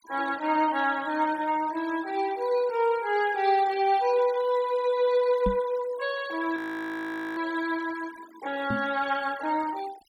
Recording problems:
noise reduction artefacts; signal-to-artefact ratio 20 dB
microphone thump; at 5.5 s and at 8.5 s; peak +1 dB vs average level
frozen audio; at 6.5 s for 1 s

